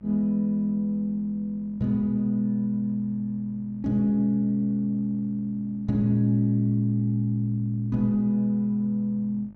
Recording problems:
hum; 50 Hz, harmonics up to 1.2 kHz, SNR 27 dB

